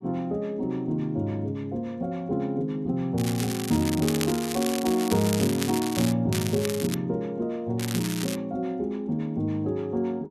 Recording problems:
crackling; from 3 to 6 s, at 6.5 s and at 8 s; loose cable, SNR 7 dB

